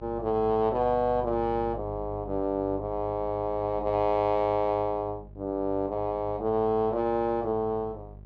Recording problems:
electrical hum; 50 Hz, harmonics up to 600 Hz, SNR 17 dB

